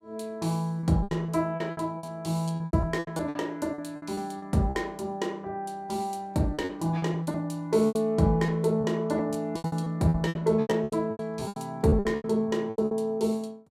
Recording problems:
packet loss; 16% of the sound replaced, filled with repeated pitch periods

